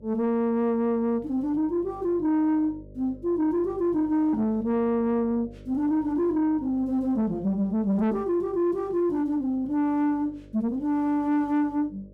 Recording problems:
distorted audio; soft clipping, signal-to-distortion ratio 11 dB
hum; 50 Hz, harmonics up to 750 Hz, SNR 23 dB

